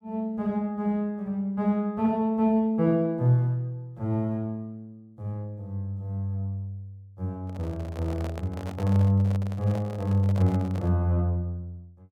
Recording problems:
microphone handling noise; from 7.5 to 11 s; peak -7 dB vs average level

